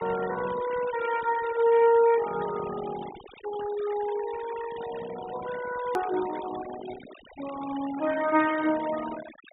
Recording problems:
treble cut off; nothing above 4 kHz
noise reduction artefacts; signal-to-artefact ratio 14 dB
click at an edit; at 6 s

